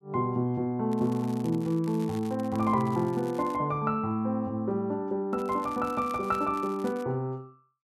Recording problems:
crackle; from 1 to 3.5 s and from 5.5 to 7 s; loose cable, SNR 23 dB

